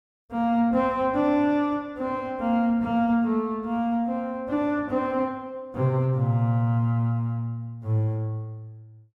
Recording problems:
none

